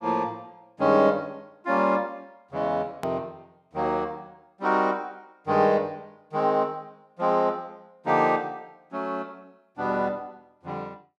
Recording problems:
hard cut with a click; at 3 s

